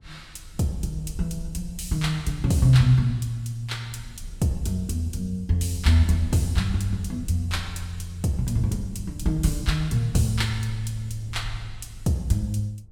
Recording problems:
low-frequency rumble; below 74 Hz, SNR 17 dB

